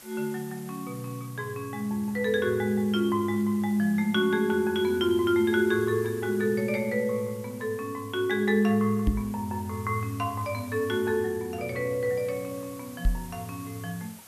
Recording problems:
hiss; slope -1 dB per octave, SNR 20 dB
microphone thump; at 9 s and at 13 s; peak +5 dB vs average level

